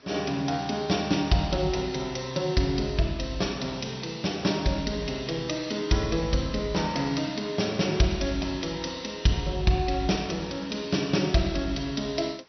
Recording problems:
treble missing; nothing above 5.9 kHz
background hiss; slope -2 dB per octave, SNR 29 dB

